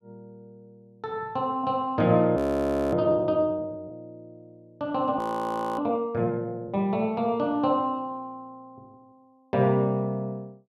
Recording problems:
audio freezing; at 2.5 s for 0.5 s and at 5 s for 0.5 s

